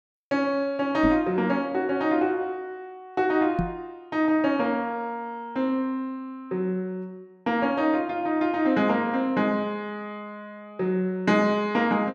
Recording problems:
microphone bump; at 1 s and at 3.5 s; peak +3 dB vs average level

